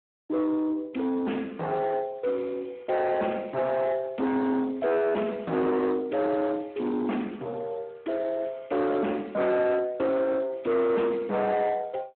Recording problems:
telephone audio; 390 Hz to 2.5 kHz, Speex
distortion; soft clipping, signal-to-distortion ratio 7 dB

